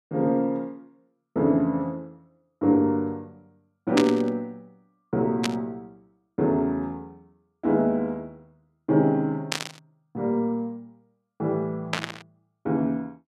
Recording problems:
burst of static; 4 times, first at 4 s; peak +4 dB vs average level

